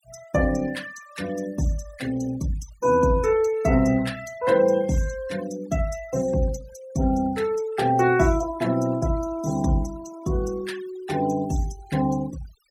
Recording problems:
noise reduction artefacts; signal-to-artefact ratio 19 dB

